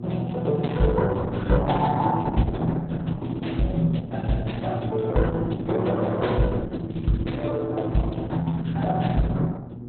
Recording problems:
lossy compression; Opus, log-spectral distance 4 dB, nothing above 4 kHz
hum; 60 Hz, harmonics up to 840 Hz, SNR 11 dB

